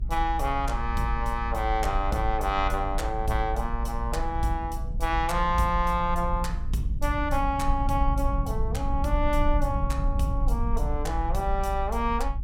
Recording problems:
low-frequency rumble; below 56 Hz, SNR 3 dB

